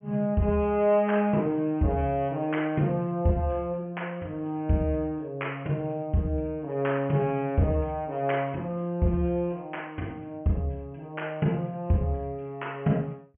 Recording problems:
treble cut off; nothing above 3.1 kHz

